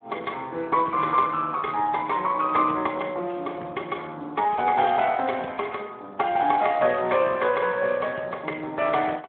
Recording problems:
phone line; 260 Hz to 3.3 kHz, Speex

